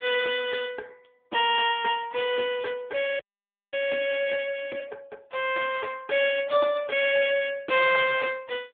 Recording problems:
phone line; 390 Hz to 3.4 kHz, AMR-NB
audio freezing; at 3 s for 0.5 s

